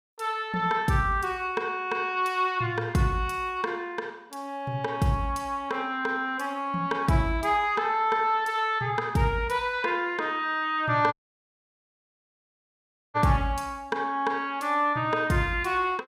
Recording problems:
audio cutting out; at 11 s for 2 s

